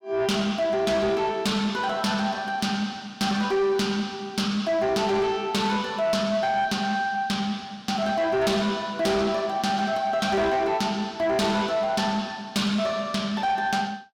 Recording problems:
distorted audio; soft clipping, signal-to-distortion ratio 11 dB

